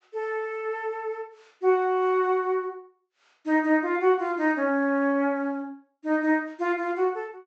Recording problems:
treble cut off; nothing above 8 kHz

